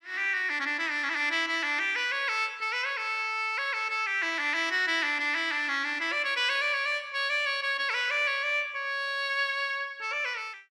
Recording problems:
none

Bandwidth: 14.5 kHz